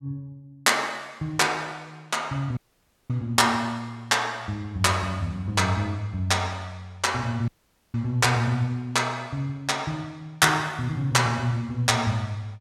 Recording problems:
audio cutting out; at 2.5 s for 0.5 s and at 7.5 s

